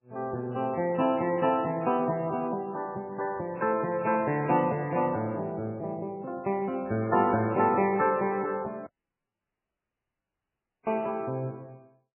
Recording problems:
lossy compression; MP3, log-spectral distance 2 dB, nothing above 2.4 kHz
dropout; at 9 s for 2 s

